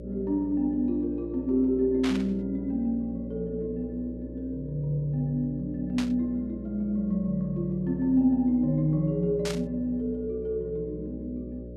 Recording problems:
hum; 60 Hz, harmonics up to 600 Hz, SNR 13 dB
burst of static; at 2 s, at 6 s and at 9.5 s; peak -3 dB vs average level

